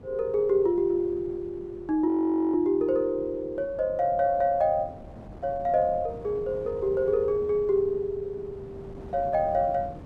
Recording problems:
wind on the microphone; below 410 Hz, SNR 18 dB
audio freezing; at 2 s

